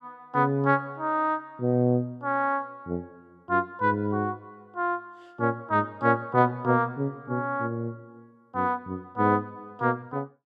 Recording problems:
none

